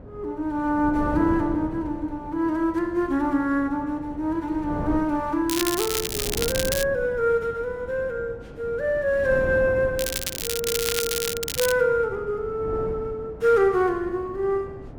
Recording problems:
wind noise; below 390 Hz, SNR 12 dB
crackle; from 5.5 to 7 s and from 10 to 12 s; loose cable, SNR 3 dB

